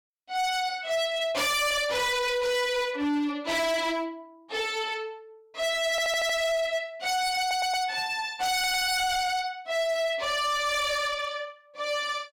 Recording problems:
distorted audio; hard clipping, signal-to-distortion ratio 6 dB
stutter; at 6 s, at 7.5 s and at 8.5 s

